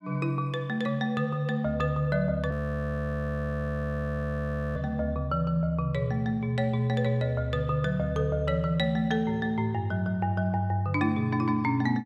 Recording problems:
audio freezing; at 2.5 s for 2.5 s

